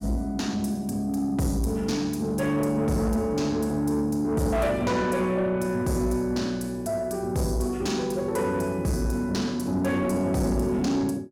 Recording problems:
distortion; soft clipping, signal-to-distortion ratio 11 dB

